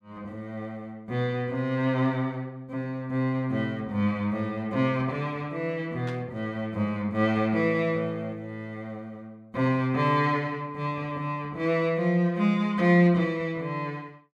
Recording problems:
burst of static; at 6 s; peak -11 dB vs average level

